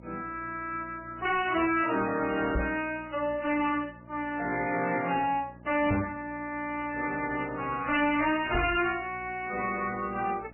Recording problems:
lossy compression; MP3, then MP3, log-spectral distance 5 dB, nothing above 2.4 kHz
distortion; hard clipping, uneven, signal-to-distortion ratio 6 dB
electrical hum; 60 Hz, harmonics up to 1.3 kHz, SNR 21 dB
microphone bump; at 2.5 s, at 6 s and at 8.5 s; peak +4 dB vs average level

